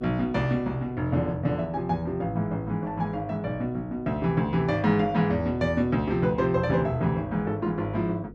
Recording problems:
electrical hum; 50 Hz, harmonics up to 500 Hz, SNR 21 dB

